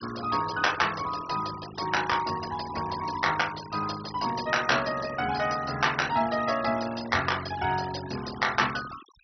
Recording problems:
treble missing; nothing above 5.9 kHz
denoising artefacts; signal-to-artefact ratio 14 dB

